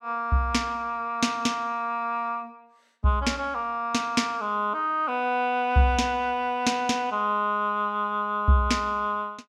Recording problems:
none

